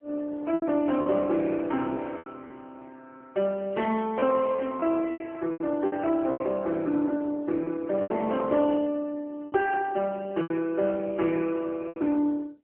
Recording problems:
phone line; 220 Hz to 3.2 kHz, AMR-NB
lost packets; 8% of the sound replaced, filled with repeated pitch periods

